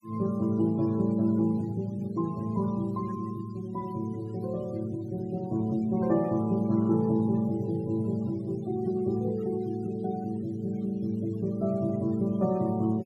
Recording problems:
denoising artefacts; signal-to-artefact ratio 23 dB

